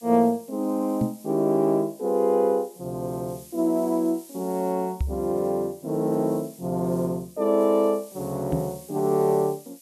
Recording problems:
hiss; SNR 22 dB
knock on the microphone; at 1 s, at 5 s and at 8.5 s; peak +2 dB vs average level

